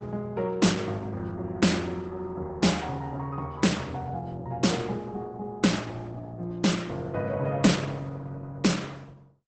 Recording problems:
lossy compression; Opus, log-spectral distance 3 dB, nothing above 8 kHz

